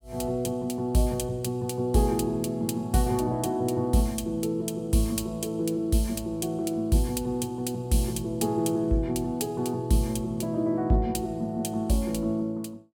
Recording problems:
none

